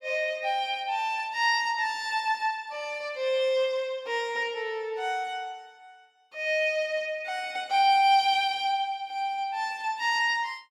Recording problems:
none

